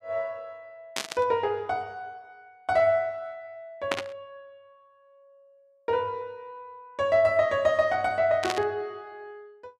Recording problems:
burst of static; at 1 s, at 4 s and at 8.5 s; peak +3 dB vs average level

